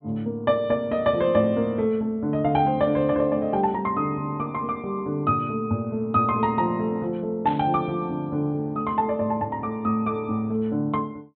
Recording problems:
treble cut off; nothing above 4 kHz
burst of static; at 7.5 s; peak -12 dB vs average level

